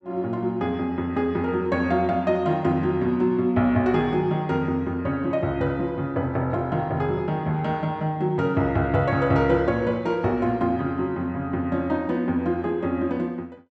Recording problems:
none

